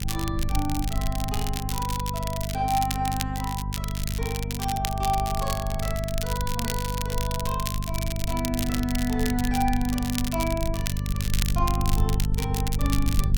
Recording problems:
hum; 50 Hz, harmonics up to 450 Hz, SNR 1 dB
low-frequency rumble; below 58 Hz, SNR 5 dB
crackling; vinyl, SNR 4 dB

